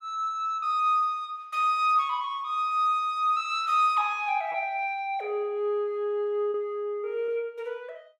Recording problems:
packet loss; 1.8% of the sound replaced, filled with repeated pitch periods

